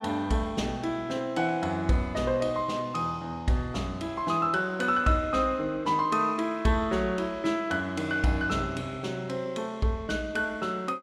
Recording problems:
none

